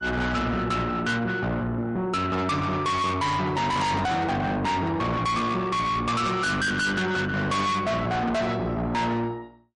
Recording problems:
codec artefacts; MP3, log-spectral distance 2 dB, nothing above 10.4 kHz
distortion; soft clipping, signal-to-distortion ratio 6 dB

